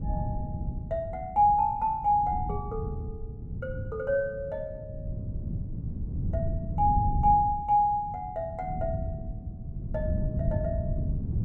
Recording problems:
wind on the microphone; below 150 Hz, SNR 6 dB

